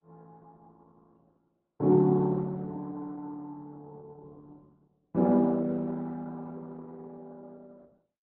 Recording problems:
codec artefacts; Opus, log-spectral distance 3 dB

